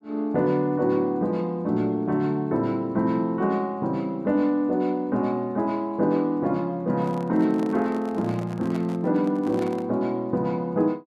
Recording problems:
handling noise; from 7 to 10 s; peak -10 dB vs average level

